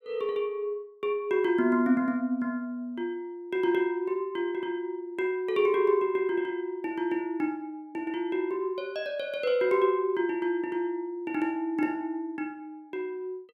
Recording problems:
none

